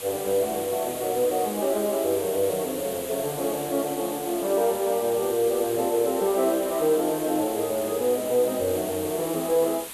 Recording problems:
hiss; SNR 10 dB

